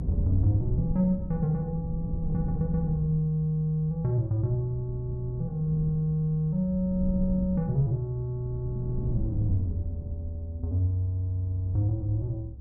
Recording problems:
rumble; below 140 Hz, SNR 8 dB

